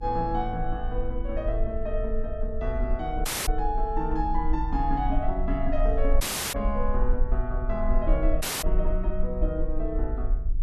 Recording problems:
hum; 50 Hz, harmonics up to 400 Hz, SNR 19 dB
rumble; below 42 Hz, SNR 0 dB
dropout; at 3.5 s, at 6 s and at 8.5 s

